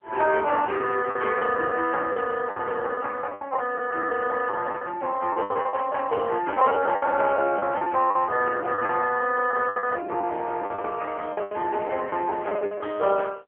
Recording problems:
telephone audio; 320 Hz to 3.1 kHz, AMR-NB
lost packets; 12% of the sound replaced, filled with the last packet

